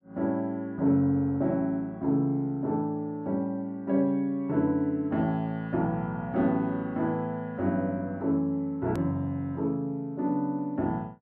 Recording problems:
click at an edit; at 9 s

